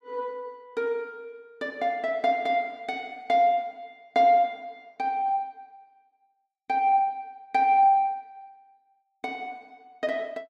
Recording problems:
none

